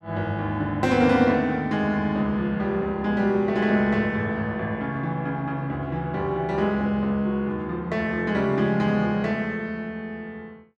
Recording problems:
none

